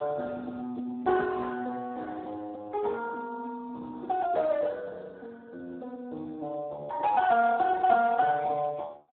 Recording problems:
phone line; 280 Hz to 2.1 kHz, Speex

